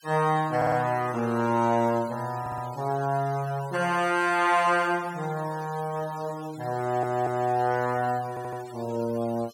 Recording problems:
noise reduction artefacts; signal-to-artefact ratio 20 dB
stutter; 4 times, first at 0.5 s

